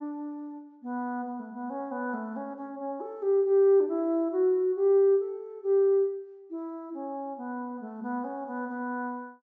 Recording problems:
low-pass filter; nothing above 8 kHz

